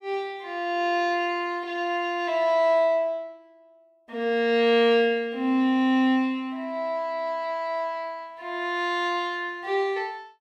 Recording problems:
none

